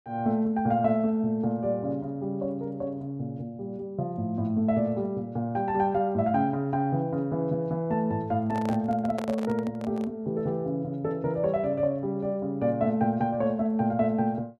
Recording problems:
microphone handling noise; from 8.5 to 10 s; peak -3 dB vs average level

